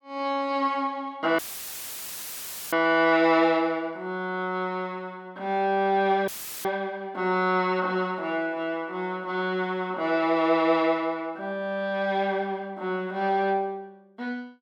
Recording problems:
dropout; at 1.5 s for 1.5 s and at 6.5 s; filled with static

